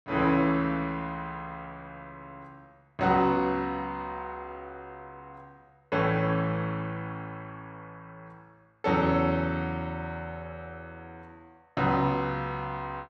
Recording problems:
none

